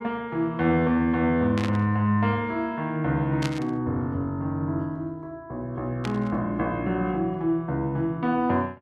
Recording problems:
static burst; at 1.5 s, at 3.5 s and at 6 s; peak -3 dB vs average level

